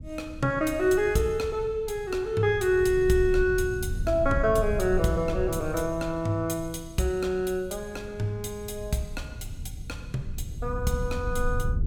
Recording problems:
low-frequency rumble; below 96 Hz, SNR 10 dB

